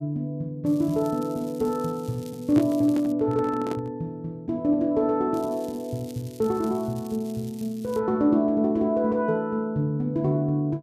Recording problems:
crackling; from 0.5 to 3 s and from 5.5 to 8 s; loose cable, SNR 23 dB
handling noise; from 2.5 to 4 s; peak -2 dB vs average level

